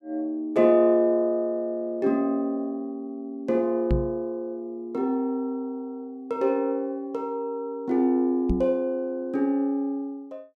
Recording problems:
microphone thump; at 4 s and at 8.5 s; peak +4 dB vs average level

